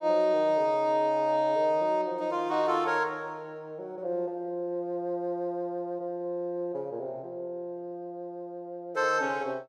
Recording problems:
none

